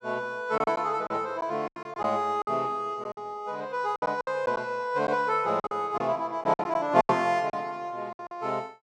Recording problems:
lost packets; 10% of the sound replaced, filled with silence

